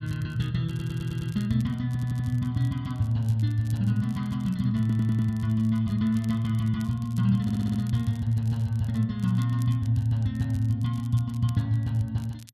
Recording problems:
crackle; vinyl, SNR 27 dB
audio stuttering; 4 times, first at 0.5 s

